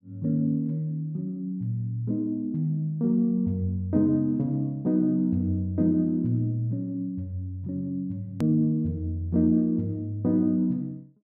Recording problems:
edit click; at 8.5 s

